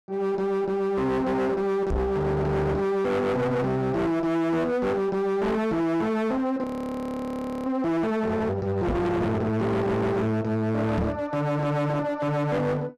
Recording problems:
distortion; hard clipping, uneven, signal-to-distortion ratio 6 dB
knock on the microphone; at 2 s, at 9 s and at 11 s; peak +4 dB vs average level
audio freezing; at 6.5 s for 1 s

